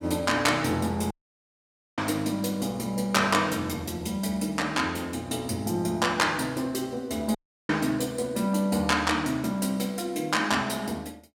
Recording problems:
audio cutting out; at 1 s for 1 s and at 7.5 s

